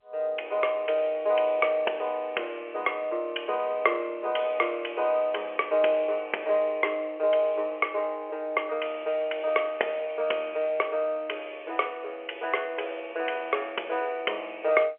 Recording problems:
phone line; 370 Hz to 3.2 kHz, G.711

